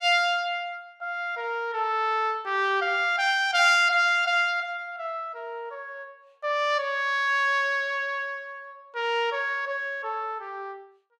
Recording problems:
none

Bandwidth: 14.5 kHz